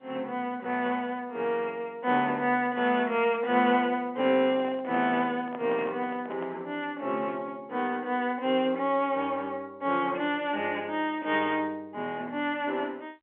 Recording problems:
phone line; 190 Hz to 3.3 kHz, G.711
handling noise; from 4.5 to 6.5 s; peak -8 dB vs average level

